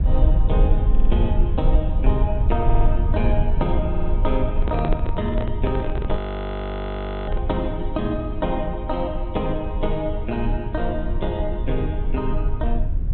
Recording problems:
treble missing; nothing above 4 kHz
low-frequency rumble; below 62 Hz, SNR -2 dB
stutter; at 1 s, at 2.5 s and at 4 s
microphone handling noise; from 4.5 to 7.5 s; peak +2 dB vs average level
audio freezing; at 6 s for 1 s

